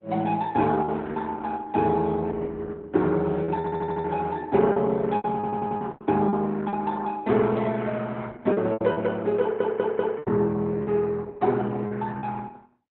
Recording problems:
codec artefacts; Opus, log-spectral distance 3 dB, nothing above 3.9 kHz
lost packets; 8% of the sound replaced, filled with repeated pitch periods
audio stuttering; at 3.5 s, at 5.5 s and at 9.5 s

